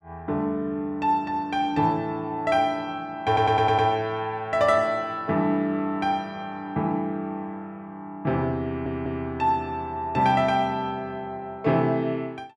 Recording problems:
audio stuttering; at 3.5 s and at 8.5 s

